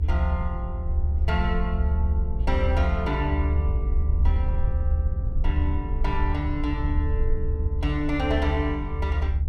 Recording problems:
low-frequency rumble; below 74 Hz, SNR -4 dB

